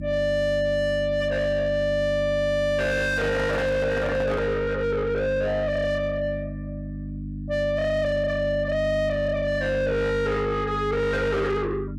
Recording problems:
distorted audio; soft clipping, signal-to-distortion ratio 6 dB
hum; 50 Hz, harmonics up to 300 Hz, SNR 9 dB
microphone handling noise; from 3 to 4.5 s; peak +1 dB vs average level

